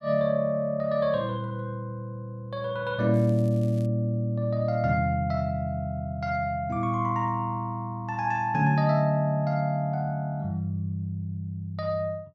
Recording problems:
crackle; at 3 s; loose cable, SNR 28 dB

